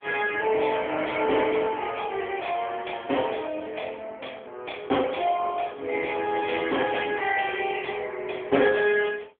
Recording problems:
telephone audio; 260 Hz to 3.3 kHz, AMR-NB

